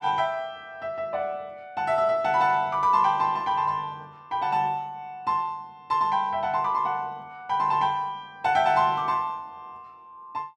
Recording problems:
none

